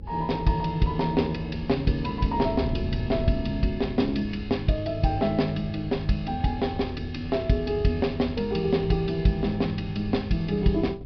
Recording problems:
treble cut off; nothing above 5.5 kHz
hum; 50 Hz, harmonics up to 550 Hz, SNR 21 dB
wind noise; below 120 Hz, SNR 13 dB

